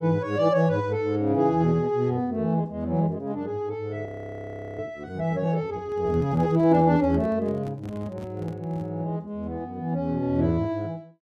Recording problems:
audio freezing; at 4 s for 0.5 s
microphone handling noise; from 6 to 9 s; peak -11 dB vs average level

